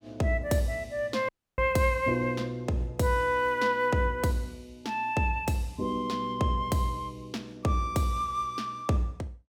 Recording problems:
dropout; at 1.5 s

